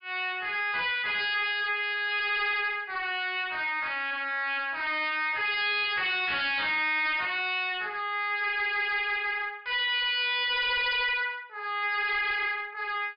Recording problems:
low-pass filter; nothing above 5 kHz
distortion; soft clipping, signal-to-distortion ratio 5 dB

